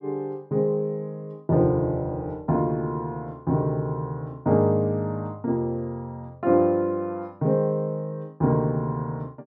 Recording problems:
none

